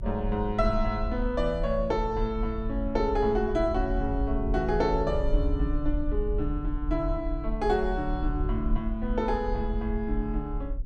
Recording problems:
low-frequency rumble; below 52 Hz, SNR 4 dB

